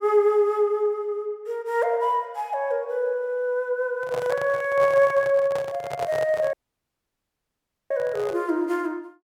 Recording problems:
handling noise; from 4 to 8.5 s; peak -4 dB vs average level
audio cutting out; at 6.5 s for 1.5 s

